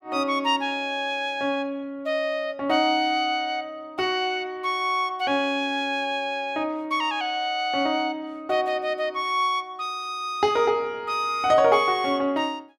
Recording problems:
none

